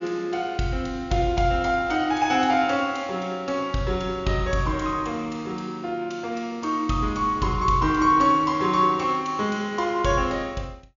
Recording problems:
treble cut off; nothing above 7.1 kHz

